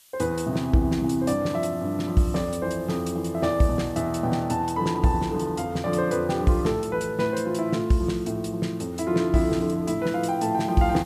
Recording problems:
hiss; slope +4 dB per octave, SNR 28 dB

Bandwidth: 14.5 kHz